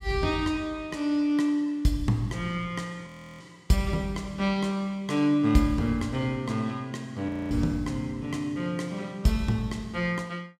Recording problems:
audio freezing; at 3 s and at 7.5 s

